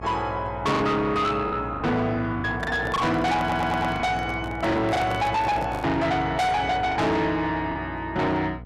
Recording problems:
distorted audio; soft clipping, signal-to-distortion ratio 7 dB
hum; 60 Hz, harmonics up to 960 Hz, SNR 14 dB
lost packets; 7% of the sound replaced, filled with the last packet
microphone handling noise; from 2.5 to 6 s; peak -4 dB vs average level
stutter; at 3.5 s

